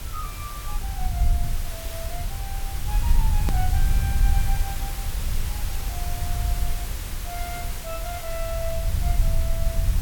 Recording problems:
hiss; slope -2 dB per octave, SNR -2 dB
rumble; below 66 Hz, SNR -10 dB
hard cut with a click; at 3.5 s

